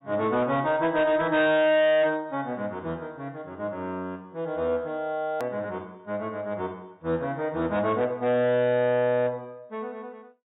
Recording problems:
treble cut off; nothing above 4 kHz
distortion; hard clipping, signal-to-distortion ratio 11 dB
edit click; at 5.5 s

